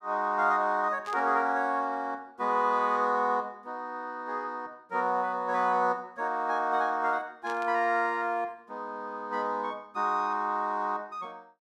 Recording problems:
static burst; at 1 s and at 7.5 s; peak -13 dB vs average level

